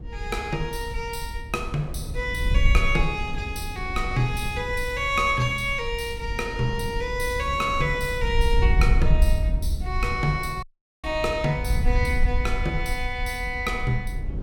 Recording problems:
rumble; below 120 Hz, SNR 12 dB
wind noise; below 66 Hz, SNR 3 dB
audio cutting out; at 11 s

